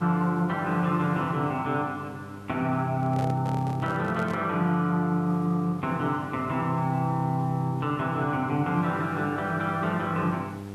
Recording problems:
hum; 50 Hz, harmonics up to 1.3 kHz, SNR 15 dB
hiss; slope -5 dB per octave, SNR 25 dB
handling noise; from 3 to 4.5 s; peak -6 dB vs average level

